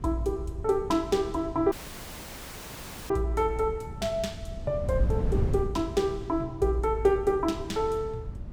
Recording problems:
wind noise; below 130 Hz, SNR 8 dB
dropout; at 1.5 s for 1.5 s

